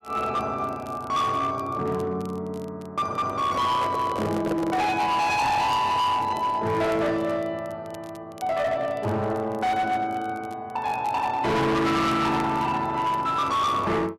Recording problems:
distorted audio; hard clipping, signal-to-distortion ratio 7 dB
crackling; vinyl, SNR 28 dB
handling noise; from 3.5 to 5 s; peak -1 dB vs average level

